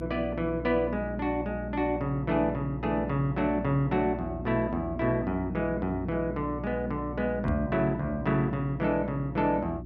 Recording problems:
hum; 60 Hz, harmonics up to 360 Hz, SNR 9 dB
knock on the microphone; at 7.5 s; peak +2 dB vs average level

